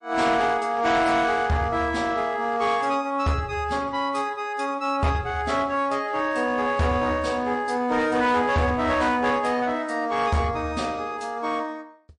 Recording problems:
codec artefacts; MP3, log-spectral distance 2 dB, nothing above 9.5 kHz
distortion; hard clipping, uneven, signal-to-distortion ratio 11 dB

